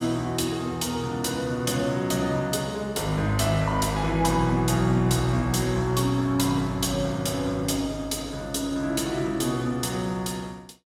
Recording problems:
none

